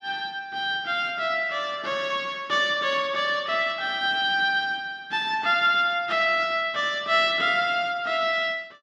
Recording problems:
none

